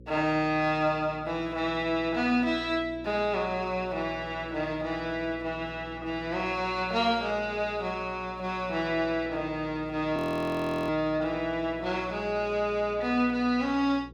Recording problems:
electrical hum; 60 Hz, harmonics up to 540 Hz, SNR 19 dB
audio freezing; at 10 s for 0.5 s

